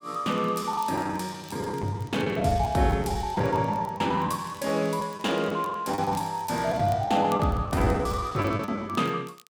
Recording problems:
crackling; vinyl, SNR 26 dB
lost packets; 11% of the sound replaced, filled with the last packet

